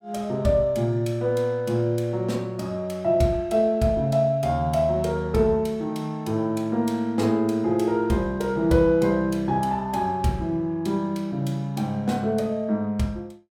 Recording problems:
none

